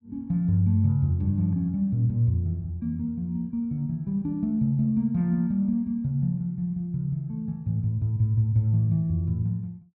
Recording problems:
none

